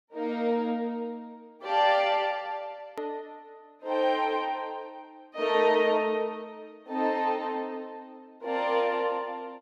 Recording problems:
click at an edit; at 3 s

